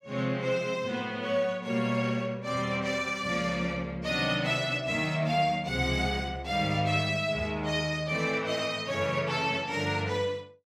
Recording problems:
none

